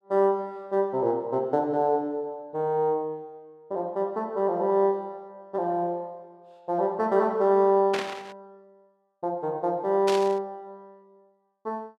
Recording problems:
burst of static; at 8 s and at 10 s; peak -1 dB vs average level

